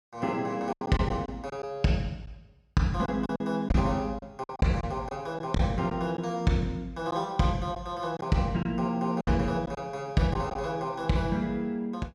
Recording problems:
lost packets; 6% of the sound replaced, filled with silence

